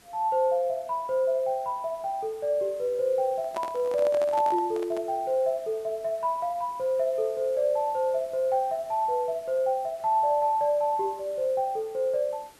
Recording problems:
background hiss; slope -3 dB per octave, SNR 26 dB
handling noise; from 3.5 to 5 s; peak -5 dB vs average level

